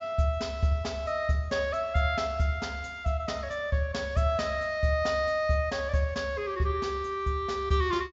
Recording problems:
treble missing; nothing above 7.5 kHz

